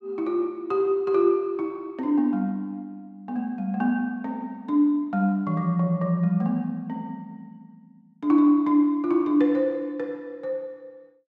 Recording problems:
none

